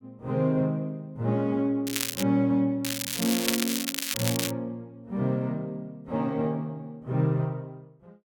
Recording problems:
crackling; at 2 s and from 3 to 4.5 s; loose cable, SNR 1 dB

